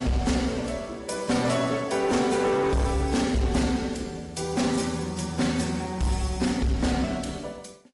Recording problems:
lossy compression; AAC, then MP3, log-spectral distance 4 dB, nothing above 11 kHz
distortion; hard clipping, signal-to-distortion ratio 11 dB

